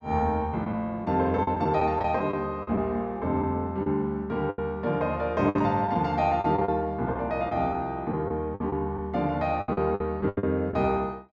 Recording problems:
packet loss; 9% of the sound replaced, filled with the last packet

